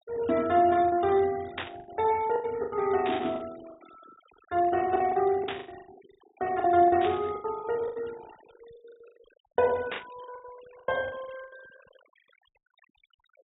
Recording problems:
treble missing; nothing above 4 kHz
denoising artefacts; signal-to-artefact ratio 24 dB
lost packets; 17% of the sound replaced, filled with the last packet
burst of static; 5 times, first at 1.5 s; peak -3 dB vs average level

